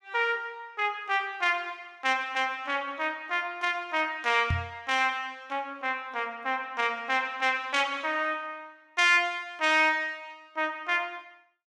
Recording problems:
microphone bump; at 4.5 s; peak +2 dB vs average level

